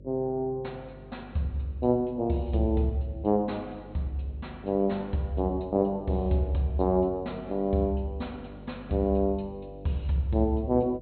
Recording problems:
low-pass filter; nothing above 4.2 kHz
hum; 50 Hz, harmonics up to 600 Hz, SNR 19 dB

